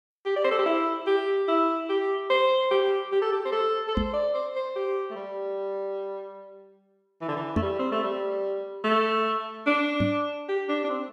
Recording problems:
microphone thump; at 4 s, at 7.5 s and at 10 s; peak +3 dB vs average level

